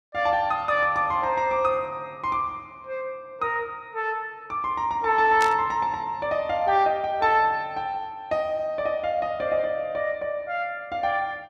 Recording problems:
static burst; at 5.5 s; peak -2 dB vs average level

